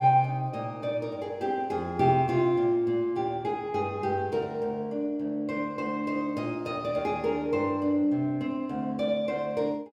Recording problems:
none

